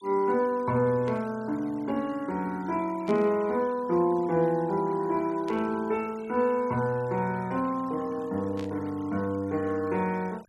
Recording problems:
denoising artefacts; signal-to-artefact ratio 24 dB
static burst; 4 times, first at 1 s; peak -12 dB vs average level

